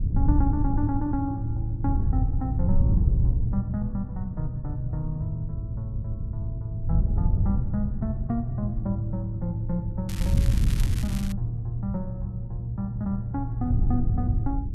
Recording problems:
low-frequency rumble; below 130 Hz, SNR 10 dB
wind noise; below 100 Hz, SNR -2 dB
crackle; from 10 to 11 s; loose cable, SNR 10 dB

